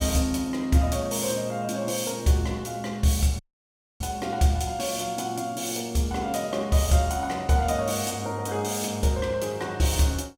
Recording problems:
audio cutting out; at 3.5 s for 0.5 s

